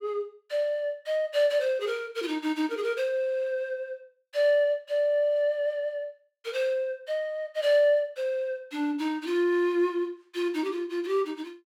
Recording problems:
none

